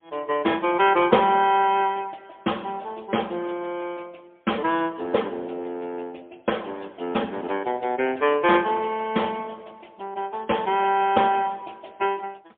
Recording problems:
phone line; 260 Hz to 3.4 kHz, AMR-NB, then MP3

